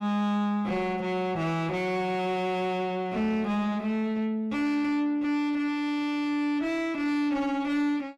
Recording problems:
distortion; soft clipping, signal-to-distortion ratio 10 dB

